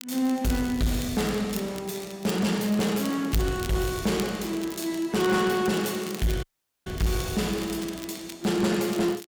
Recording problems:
distorted audio; soft clipping, signal-to-distortion ratio 12 dB
crackling; vinyl, SNR 15 dB
dropout; at 6.5 s

